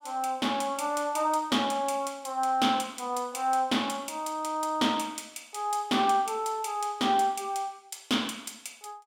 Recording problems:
none

